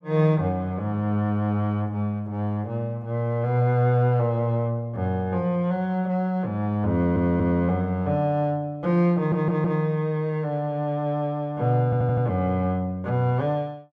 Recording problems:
stutter; at 7 s, at 9 s and at 12 s

